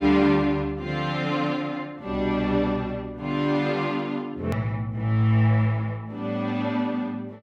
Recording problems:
click at an edit; at 4.5 s

